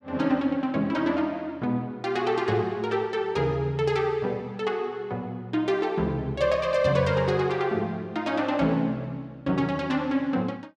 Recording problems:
none

